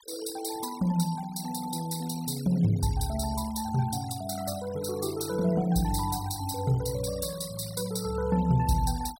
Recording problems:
denoising artefacts; signal-to-artefact ratio 15 dB

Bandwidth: 16 kHz